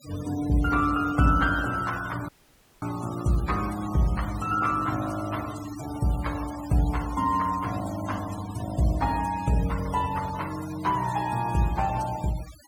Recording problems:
denoising artefacts; signal-to-artefact ratio 16 dB
dropout; at 2.5 s for 0.5 s

